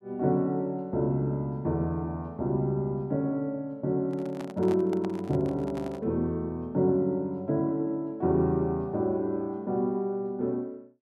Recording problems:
handling noise; from 4 to 6 s; peak -7 dB vs average level

